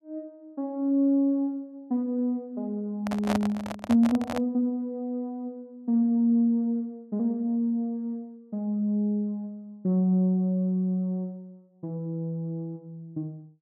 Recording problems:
handling noise; from 3 to 4.5 s; peak +2 dB vs average level

